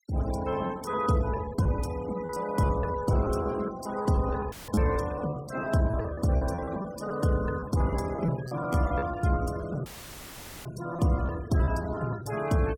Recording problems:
denoising artefacts; signal-to-artefact ratio 18 dB
lost packets; 13% of the sound replaced, filled with repeated pitch periods
audio cutting out; at 4.5 s and at 10 s for 1 s; filled with static

